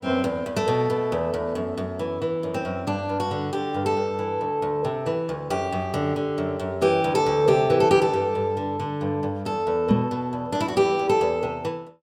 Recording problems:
knock on the microphone; at 10 s; peak +8 dB vs average level

